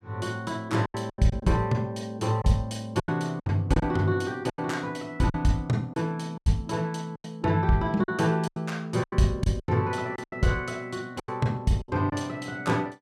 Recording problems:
packet loss; 10% of the sound replaced, filled with silence

